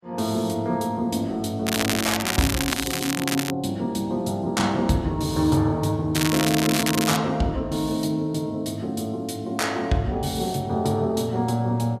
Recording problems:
crackle; from 1.5 to 3.5 s and from 6 to 7 s; loose cable, SNR 2 dB

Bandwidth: 14.5 kHz